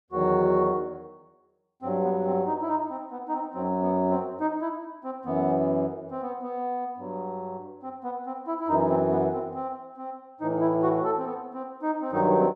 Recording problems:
none

